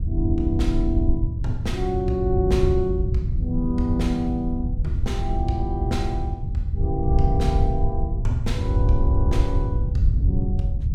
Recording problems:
rumble; below 92 Hz, SNR -2 dB

